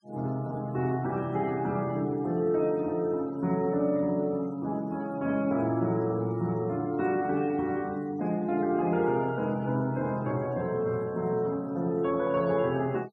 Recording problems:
noise reduction artefacts; signal-to-artefact ratio 27 dB

